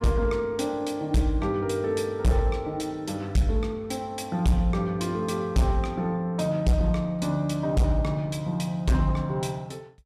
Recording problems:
distortion; hard clipping, signal-to-distortion ratio 12 dB

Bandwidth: 14 kHz